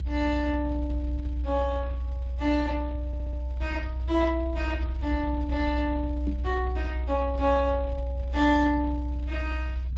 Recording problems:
lossy compression; Speex, log-spectral distance 2 dB
low-frequency rumble; below 64 Hz, strongest tone 62 Hz, SNR 3 dB
stutter; at 3 s
microphone thump; at 6.5 s; peak +1 dB vs average level

